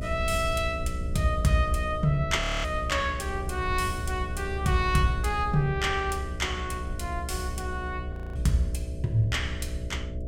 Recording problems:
hum; 60 Hz, harmonics up to 660 Hz, SNR 11 dB
rumble; below 76 Hz, SNR 7 dB
audio freezing; at 2.5 s and at 8 s

